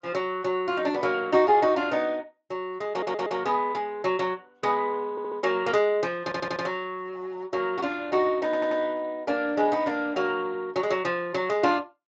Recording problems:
codec artefacts; Speex, log-spectral distance 3 dB
stutter; 4 times, first at 3 s

